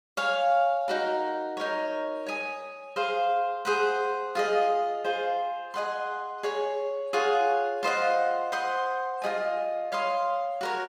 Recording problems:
none

